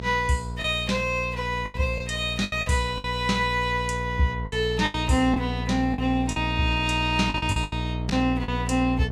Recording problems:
electrical hum; 60 Hz, harmonics up to 900 Hz, SNR 7 dB
packet loss; 9% of the sound replaced, filled with the last packet

